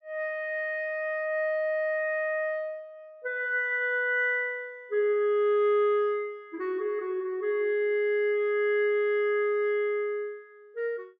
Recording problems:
none

